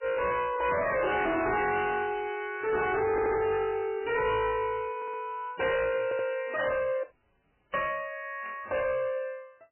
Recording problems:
lossy compression; MP3, log-spectral distance 5 dB, nothing above 2.8 kHz
distortion; soft clipping, signal-to-distortion ratio 7 dB
audio stuttering; at 3 s, at 5 s and at 6 s
audio cutting out; at 7 s for 0.5 s
burst of static; at 8.5 s; peak -11 dB vs average level

